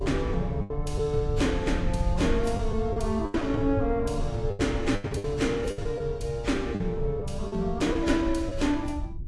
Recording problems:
codec artefacts; AAC, log-spectral distance 2 dB, nothing above 11 kHz
mains hum; 50 Hz, harmonics up to 400 Hz, SNR 21 dB
low-frequency rumble; below 86 Hz, SNR 7 dB
lost packets; 8% of the sound replaced, filled with the last packet

